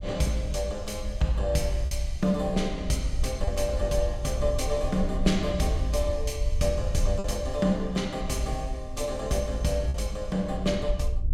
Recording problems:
wind on the microphone; below 64 Hz, SNR 6 dB
lost packets; 1.5% of the sound replaced, filled with repeated pitch periods

